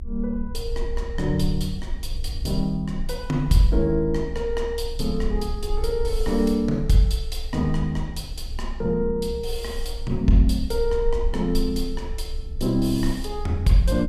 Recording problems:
rumble; below 58 Hz, strongest tone 24 Hz, SNR 8 dB

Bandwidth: 14 kHz